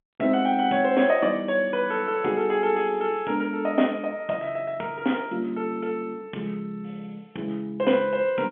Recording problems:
telephone audio; 190 Hz to 3.4 kHz, G.711

